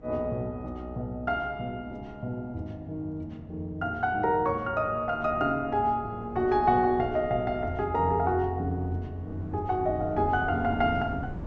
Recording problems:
low-pass filter; nothing above 7.8 kHz
wind noise; below 290 Hz, SNR 15 dB

